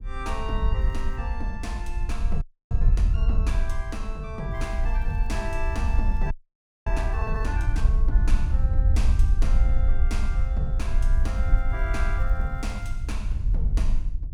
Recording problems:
rumble; below 58 Hz, SNR -8 dB
crackling; at 1 s, from 4.5 to 7.5 s and from 11 to 13 s; loose cable, SNR 29 dB
audio freezing; at 2.5 s and at 6.5 s for 0.5 s

